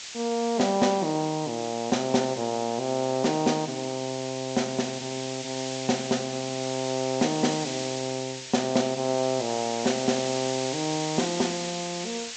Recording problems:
low-pass filter; nothing above 8 kHz
hiss; slope +3 dB per octave, SNR 8 dB

